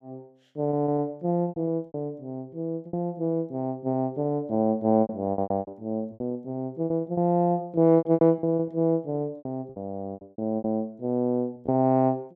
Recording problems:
packet loss; 13% of the sound replaced, filled with repeated pitch periods

